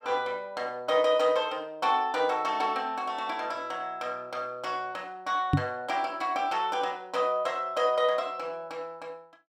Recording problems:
knock on the microphone; at 5.5 s; peak +9 dB vs average level

